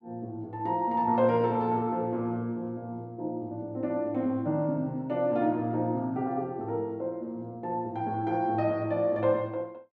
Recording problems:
none

